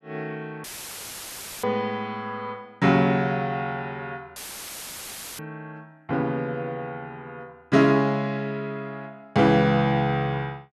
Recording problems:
dropout; at 0.5 s for 1 s and at 4.5 s for 1 s; filled with static

